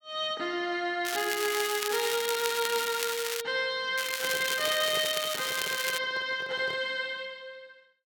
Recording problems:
crackle; from 1 to 3.5 s and from 4 to 6 s; loose cable, SNR 3 dB
handling noise; from 4 to 7 s; peak -8 dB vs average level

